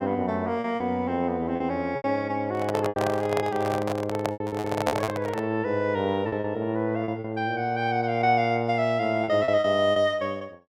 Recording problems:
packet loss; 8% of the sound replaced, filled with repeated pitch periods
handling noise; from 2.5 to 5.5 s; peak +5 dB vs average level

